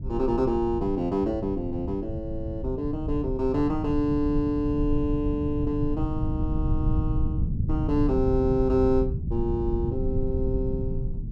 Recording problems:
low-frequency rumble; below 130 Hz, SNR 3 dB

